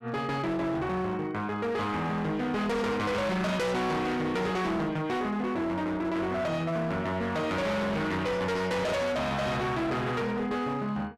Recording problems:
distorted audio; hard clipping, signal-to-distortion ratio 6 dB

